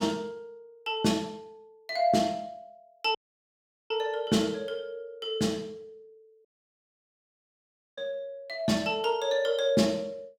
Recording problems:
audio cutting out; at 3 s for 1 s and at 6.5 s for 1.5 s

